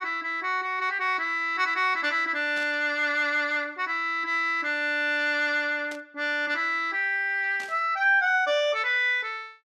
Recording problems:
static burst; at 2.5 s, at 6 s and at 7.5 s; peak -13 dB vs average level

